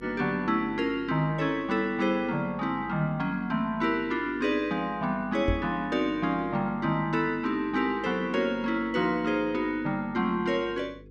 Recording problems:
hum; 50 Hz, harmonics up to 500 Hz, SNR 23 dB
microphone bump; at 5.5 s; peak +3 dB vs average level

